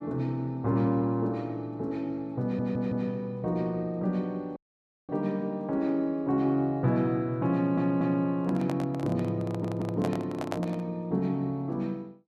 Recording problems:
audio stuttering; at 2.5 s, at 7.5 s and at 9.5 s
audio cutting out; at 4.5 s for 0.5 s
microphone handling noise; from 8.5 to 11 s; peak 0 dB vs average level

